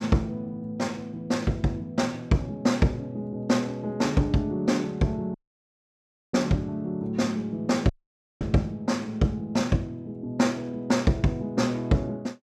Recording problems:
dropout; at 5.5 s for 1 s and at 8 s for 0.5 s

